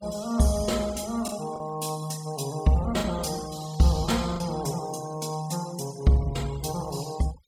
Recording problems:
noise reduction artefacts; signal-to-artefact ratio 19 dB
packet loss; 2% of the sound replaced, filled with the last packet

